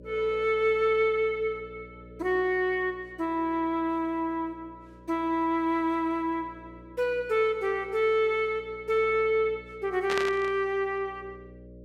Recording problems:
electrical hum; 60 Hz, harmonics up to 600 Hz, SNR 23 dB
static burst; at 10 s; peak 0 dB vs average level

